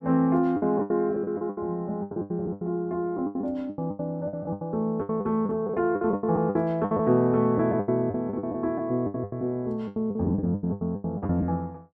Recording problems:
lost packets; 20% of the sound replaced, filled with the last packet

